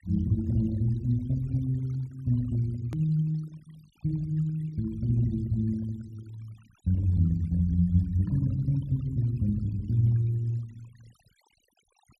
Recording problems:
denoising artefacts; signal-to-artefact ratio 27 dB
hard cut with a click; at 3 s

